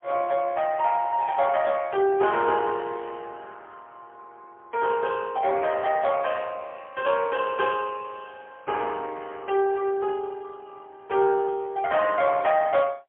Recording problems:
phone line; 300 Hz to 3.5 kHz, AMR-NB, then MP3

